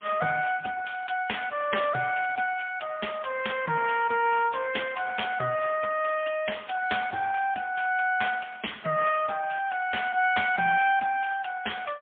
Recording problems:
telephone audio; 300 Hz to 3.4 kHz, AMR-NB, then MP3

